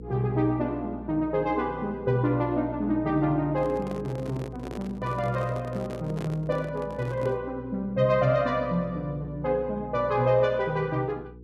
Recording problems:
hum; 60 Hz, harmonics up to 480 Hz, SNR 16 dB
handling noise; from 3.5 to 7.5 s; peak -7 dB vs average level

